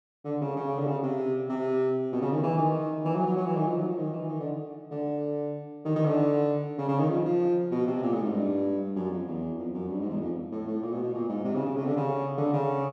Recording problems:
none

